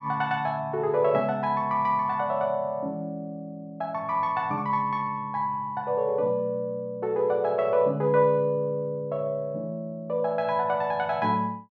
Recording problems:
none

